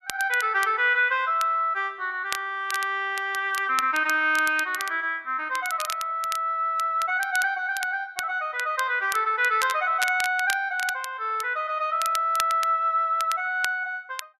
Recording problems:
crackle; vinyl, SNR 13 dB

